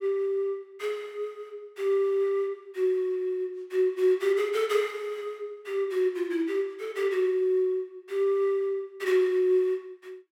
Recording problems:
none

